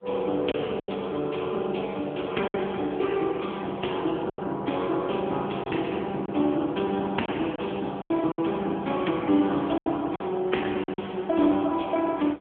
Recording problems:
phone line; 170 Hz to 3.3 kHz, AMR-NB
packet loss; 5% of the sound replaced, filled with silence

